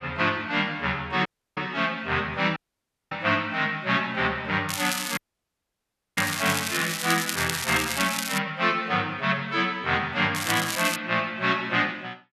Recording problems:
audio cutting out; at 1.5 s, at 2.5 s for 0.5 s and at 5 s for 1 s
crackling; from 4.5 to 8.5 s and at 10 s; loose cable, SNR 4 dB

